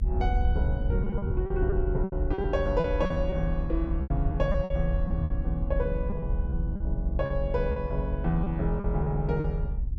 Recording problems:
low-frequency rumble; below 70 Hz, SNR 0 dB
packet loss; 10% of the sound replaced, filled with repeated pitch periods

